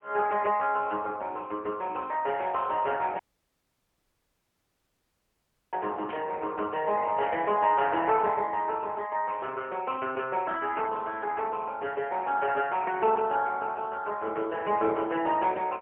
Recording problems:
telephone audio; 280 Hz to 2.8 kHz, AMR-NB, then MP3
audio cutting out; at 3 s for 2.5 s
burst of static; at 6 s; peak -12 dB vs average level

